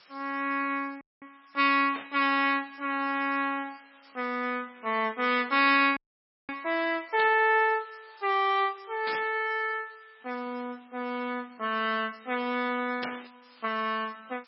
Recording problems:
codec artefacts; MP3, log-spectral distance 11 dB, nothing above 4.5 kHz
background hiss; SNR 28 dB
audio freezing; at 1 s and at 6 s for 0.5 s
static burst; 4 times, first at 2 s; peak -3 dB vs average level

